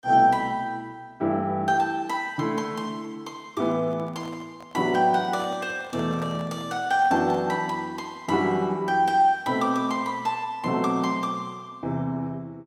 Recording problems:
handling noise; from 3.5 to 7.5 s; peak -10 dB vs average level

